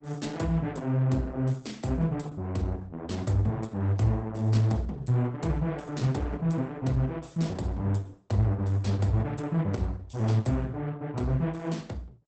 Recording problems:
lossy compression; Opus, log-spectral distance 3 dB, nothing above 8 kHz

